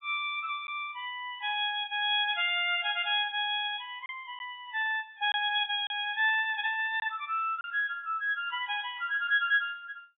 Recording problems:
codec artefacts; AAC, log-spectral distance 3 dB, nothing above 3.4 kHz
packet loss; 1.5% of the sound replaced, filled with silence

